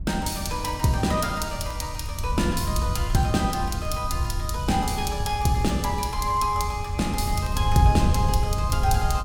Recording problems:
wind on the microphone; below 98 Hz, SNR 3 dB
crackle; vinyl, SNR 29 dB

